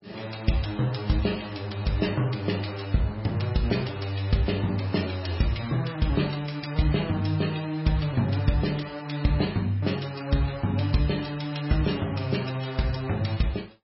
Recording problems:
codec artefacts; MP3, log-spectral distance 5 dB, nothing above 5.5 kHz

